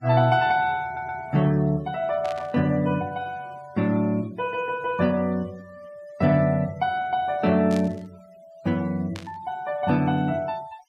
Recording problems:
denoising artefacts; signal-to-artefact ratio 26 dB
audio stuttering; at 1 s
static burst; at 2 s, at 7.5 s and at 9 s; peak -10 dB vs average level

